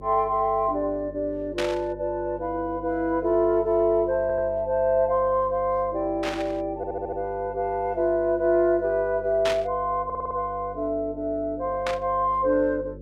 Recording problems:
hum; 50 Hz, harmonics up to 550 Hz, SNR 18 dB
burst of static; 4 times, first at 1.5 s; peak -1 dB vs average level
stutter; at 4 s, at 7 s and at 10 s

